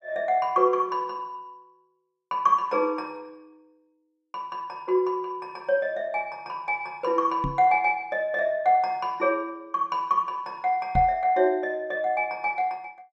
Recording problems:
knock on the microphone; at 7.5 s and at 11 s; peak 0 dB vs average level

